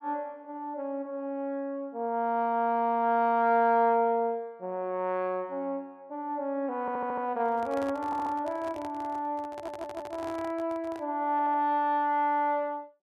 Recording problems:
audio stuttering; 4 times, first at 7 s
handling noise; from 7.5 to 11 s; peak -9 dB vs average level

